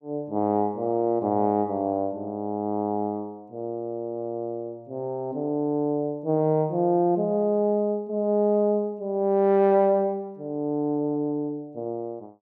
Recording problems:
none

